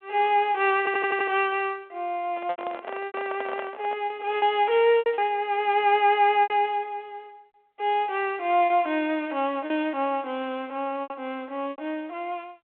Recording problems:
phone line; 280 Hz to 3.4 kHz, G.726
packet loss; 6% of the sound replaced, filled with repeated pitch periods
stutter; at 1 s
handling noise; from 2.5 to 4 s; peak -6 dB vs average level

